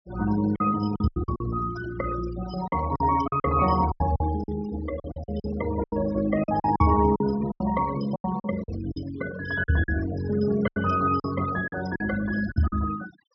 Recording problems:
treble missing; nothing above 5.8 kHz
noise reduction artefacts; signal-to-artefact ratio 15 dB
packet loss; 12% of the sound replaced, filled with silence

